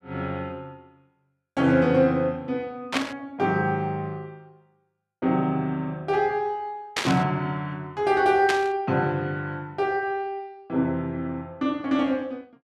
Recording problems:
burst of static; at 3 s, at 7 s and at 8.5 s; peak +4 dB vs average level

